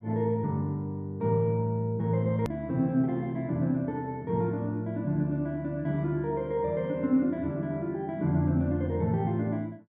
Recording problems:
hard cut with a click; at 2.5 s

